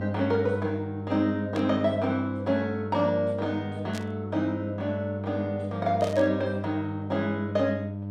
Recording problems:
hum; 50 Hz, harmonics up to 900 Hz, SNR 6 dB
burst of static; at 1.5 s, at 4 s and at 6 s; peak -7 dB vs average level

